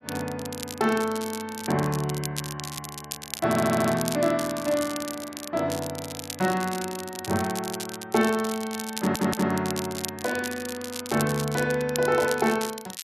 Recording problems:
crackle; vinyl, SNR 9 dB
audio stuttering; at 3.5 s and at 9 s

